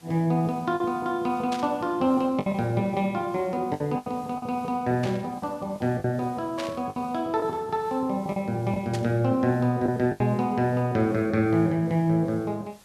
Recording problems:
hiss; slope -2 dB per octave, SNR 28 dB
packet loss; 5% of the sound replaced, filled with the last packet
static burst; 4 times, first at 1.5 s; peak -5 dB vs average level

